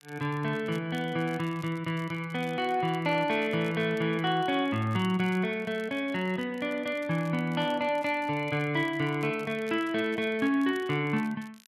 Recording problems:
crackling; vinyl, SNR 26 dB

